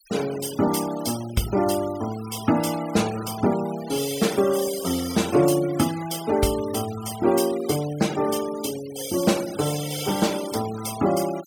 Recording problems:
noise reduction artefacts; signal-to-artefact ratio 14 dB

